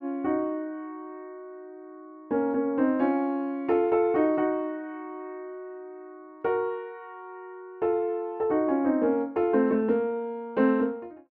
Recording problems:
none

